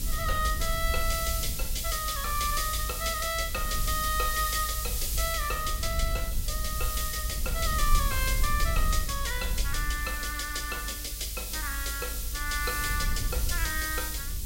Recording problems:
background hiss; slope +9 dB per octave, SNR 3 dB
low-frequency rumble; below 60 Hz, SNR 3 dB

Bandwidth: 16 kHz